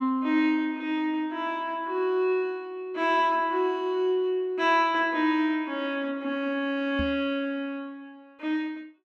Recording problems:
knock on the microphone; at 7 s; peak -2 dB vs average level

